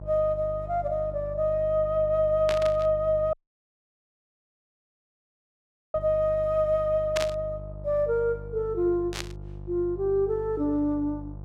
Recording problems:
mains hum; 50 Hz, harmonics up to 850 Hz, SNR 14 dB
static burst; at 2.5 s, at 7 s and at 9 s; peak 0 dB vs average level
dropout; at 3.5 s for 2.5 s

